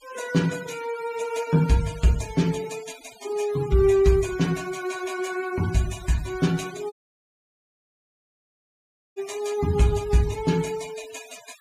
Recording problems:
noise reduction artefacts; signal-to-artefact ratio 18 dB
dropout; at 7 s for 2 s

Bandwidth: 15 kHz